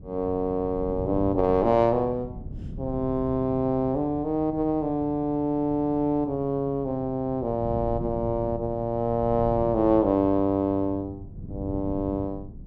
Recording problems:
wind on the microphone; below 180 Hz, SNR 14 dB

